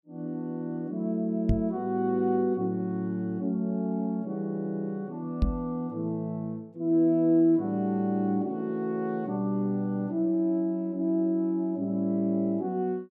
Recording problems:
microphone thump; at 1.5 s and at 5.5 s; peak +6 dB vs average level

